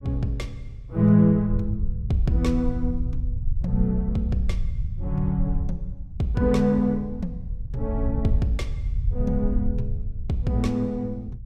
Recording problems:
low-frequency rumble; below 78 Hz, SNR 6 dB

